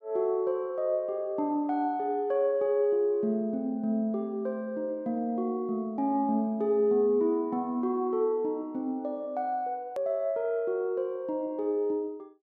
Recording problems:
edit click; at 10 s

